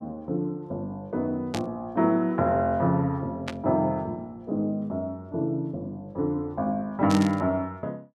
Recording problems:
burst of static; at 1.5 s, at 3.5 s and at 7 s; peak -2 dB vs average level

